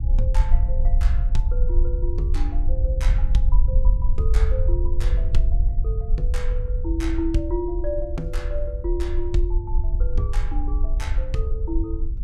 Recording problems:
rumble; below 54 Hz, SNR -7 dB

